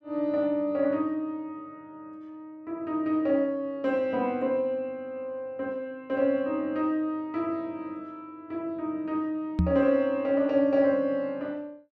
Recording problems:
knock on the microphone; at 9.5 s; peak +6 dB vs average level

